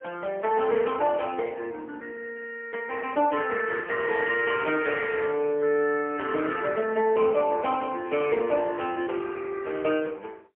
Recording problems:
telephone audio; 240 Hz to 3.1 kHz, AMR-NB, then MP3

